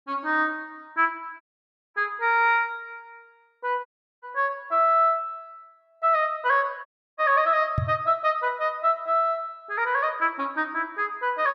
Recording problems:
audio cutting out; at 1.5 s for 0.5 s, at 4 s and at 7 s
microphone bump; at 8 s; peak +2 dB vs average level

